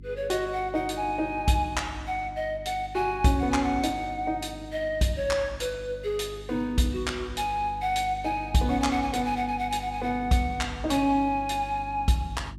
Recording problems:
hum; 50 Hz, harmonics up to 350 Hz, SNR 16 dB

